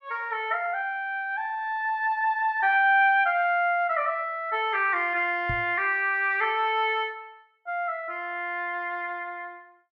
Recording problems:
knock on the microphone; at 5.5 s; peak -4 dB vs average level

